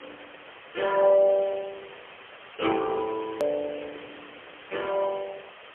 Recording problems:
phone line; 340 Hz to 3.3 kHz, AMR-NB, then MP3
background hiss; SNR 19 dB
edit click; at 3.5 s

